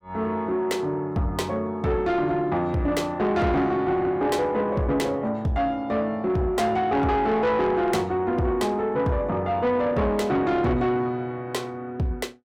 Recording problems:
distortion; soft clipping, signal-to-distortion ratio 10 dB

